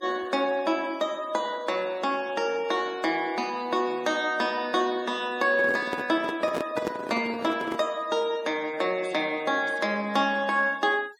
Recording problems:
noise reduction artefacts; signal-to-artefact ratio 23 dB
handling noise; from 5.5 to 8 s; peak 0 dB vs average level

